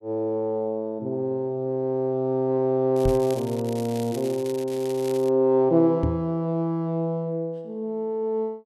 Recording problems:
crackle; from 3 to 5.5 s; loose cable, SNR 18 dB
knock on the microphone; at 3 s and at 6 s; peak +3 dB vs average level

